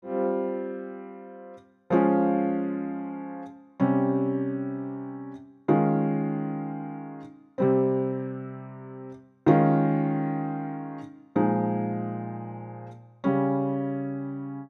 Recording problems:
none

